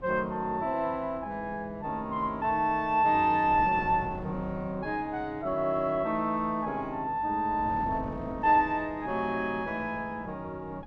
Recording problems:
wind on the microphone; below 430 Hz, SNR 17 dB

